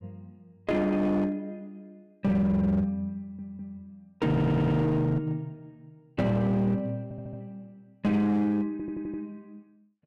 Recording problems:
distortion; hard clipping, uneven, signal-to-distortion ratio 11 dB
audio stuttering; 4 times, first at 3 s

